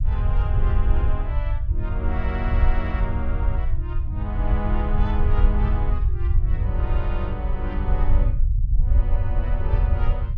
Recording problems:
rumble; below 70 Hz, SNR -9 dB

